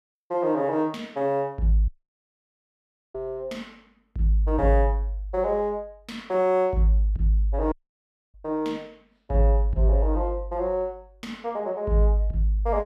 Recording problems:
audio cutting out; at 2 s for 1.5 s and at 7.5 s for 0.5 s

